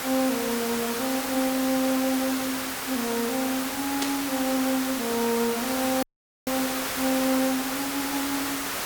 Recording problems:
background hiss; SNR 2 dB
burst of static; at 4 s; peak +3 dB vs average level
dropout; at 6 s

